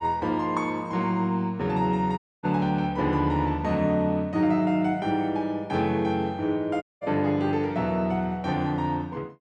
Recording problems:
audio cutting out; at 2 s and at 7 s

